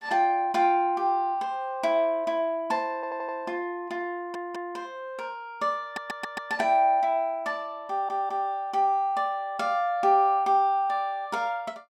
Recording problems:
audio stuttering; 4 times, first at 3 s

